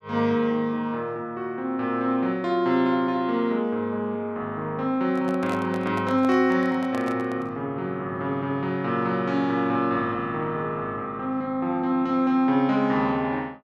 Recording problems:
handling noise; from 5 to 7.5 s; peak -5 dB vs average level

